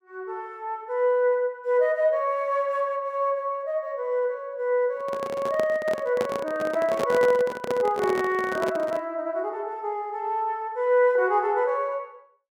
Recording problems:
handling noise; from 5 to 9 s; peak 0 dB vs average level

